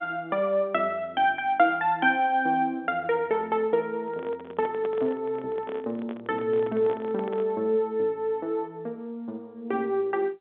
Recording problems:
telephone audio; 190 Hz to 3.9 kHz, G.711
microphone handling noise; from 4 to 7.5 s; peak -8 dB vs average level

